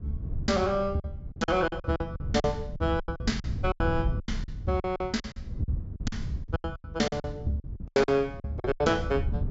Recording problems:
low-pass filter; nothing above 8 kHz
wind noise; below 120 Hz, SNR 7 dB
lost packets; 18% of the sound replaced, filled with silence

